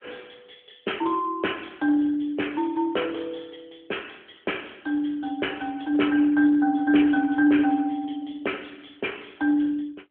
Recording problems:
telephone audio; 240 Hz to 3.2 kHz, AMR-NB

